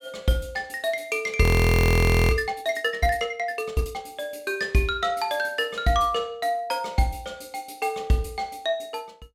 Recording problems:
frozen audio; at 1.5 s for 1 s

